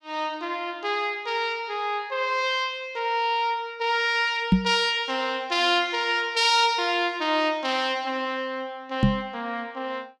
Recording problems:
microphone bump; at 4.5 s and at 9 s; peak +10 dB vs average level

